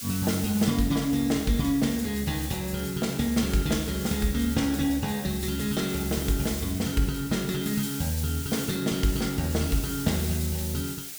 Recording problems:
hiss; SNR 9 dB
crackling; from 1.5 to 4 s and at 10 s; loose cable, SNR 27 dB

